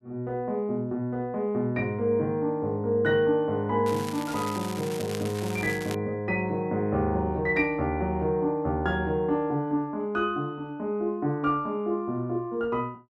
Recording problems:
crackle; from 4 to 6 s; loose cable, SNR 13 dB

